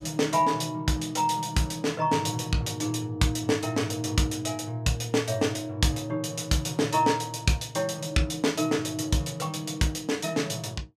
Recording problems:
none

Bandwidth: 14.5 kHz